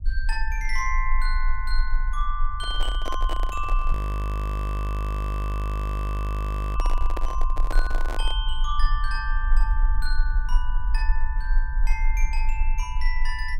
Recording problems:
low-frequency rumble; below 44 Hz, strongest tone 20 Hz, SNR -5 dB
microphone handling noise; from 2.5 to 8.5 s; peak +3 dB vs average level
audio freezing; at 4 s for 3 s

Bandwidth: 16 kHz